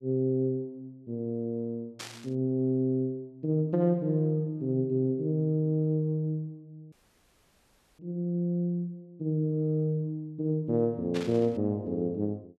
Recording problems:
static burst; at 2 s and at 11 s; peak -6 dB vs average level
audio cutting out; at 7 s for 1 s

